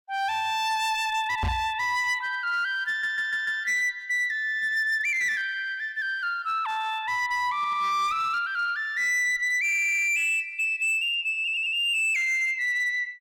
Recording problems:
distorted audio; hard clipping, signal-to-distortion ratio 12 dB
microphone thump; at 1.5 s; peak 0 dB vs average level
audio stuttering; 4 times, first at 3 s

